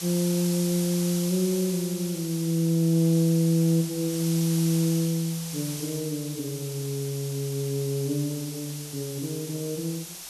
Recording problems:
hiss; SNR 9 dB

